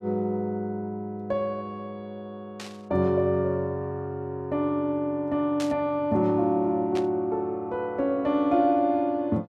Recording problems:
burst of static; at 2.5 s, at 5.5 s and at 7 s; peak -6 dB vs average level

